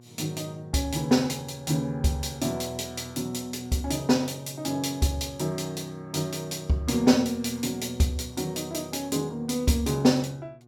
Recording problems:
electrical hum; 60 Hz, harmonics up to 1.1 kHz, SNR 25 dB

